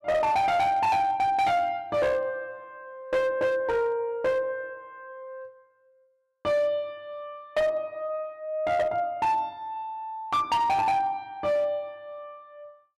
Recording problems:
distorted audio; hard clipping, uneven, signal-to-distortion ratio 10 dB

